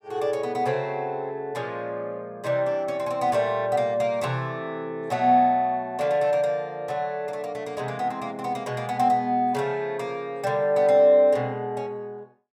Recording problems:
none

